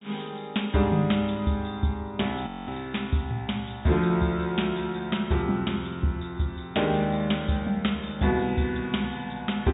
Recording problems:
treble missing; nothing above 4 kHz
frozen audio; at 2.5 s

